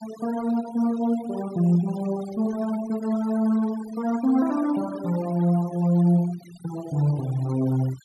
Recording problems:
denoising artefacts; signal-to-artefact ratio 20 dB

